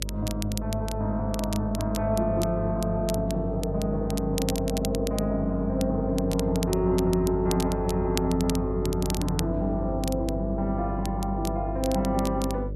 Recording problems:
hum; 50 Hz, harmonics up to 600 Hz, SNR 6 dB
crackle; vinyl, SNR 12 dB

